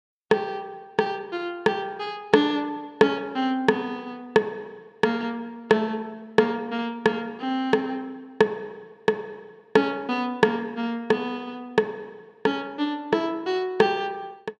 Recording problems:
none

